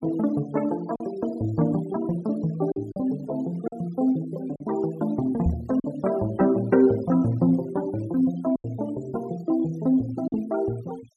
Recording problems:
denoising artefacts; signal-to-artefact ratio 24 dB
packet loss; 3% of the sound replaced, filled with silence
knock on the microphone; at 5.5 s; peak +4 dB vs average level

